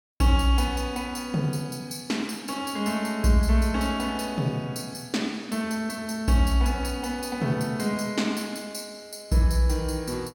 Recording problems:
none

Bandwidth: 17 kHz